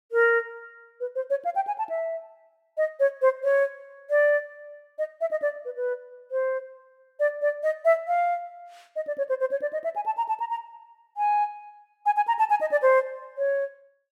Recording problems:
none

